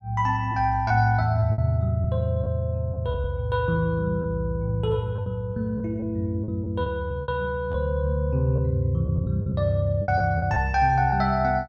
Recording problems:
packet loss; 7% of the sound replaced, filled with repeated pitch periods

